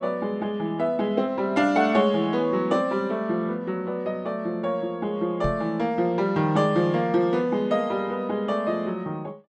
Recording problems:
knock on the microphone; at 5.5 s; peak -2 dB vs average level

